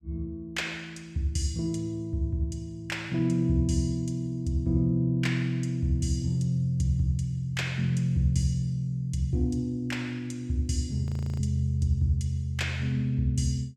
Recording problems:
audio freezing; at 11 s

